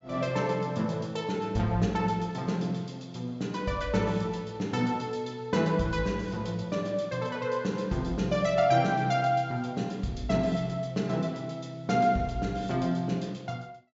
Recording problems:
treble missing; nothing above 8 kHz

